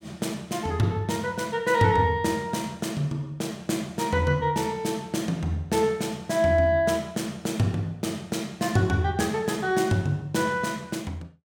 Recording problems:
none

